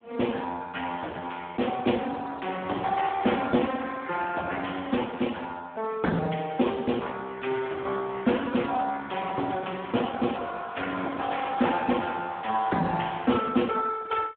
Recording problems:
phone line; 220 Hz to 3.6 kHz, Speex

